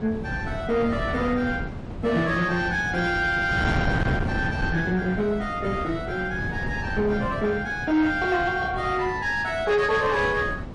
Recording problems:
lossy codec; MP3, log-spectral distance 2 dB, nothing above 9.8 kHz
distorted audio; soft clipping, signal-to-distortion ratio 12 dB
wind noise; below 350 Hz, SNR 7 dB

